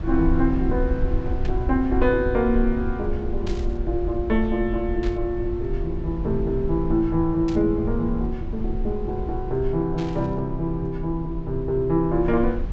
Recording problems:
low-pass filter; nothing above 8 kHz
low-frequency rumble; below 66 Hz, SNR 6 dB
burst of static; 5 times, first at 1.5 s; peak -10 dB vs average level

